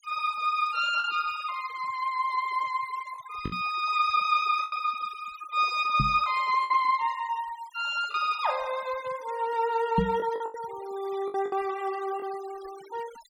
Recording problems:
noise reduction artefacts; signal-to-artefact ratio 20 dB
lost packets; 4% of the sound replaced, filled with the last packet
microphone bump; at 3.5 s, at 6 s and at 10 s; peak +6 dB vs average level

